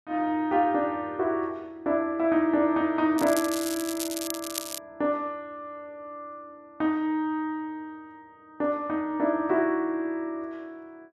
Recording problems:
crackling; from 3 to 5 s; loose cable, SNR 7 dB

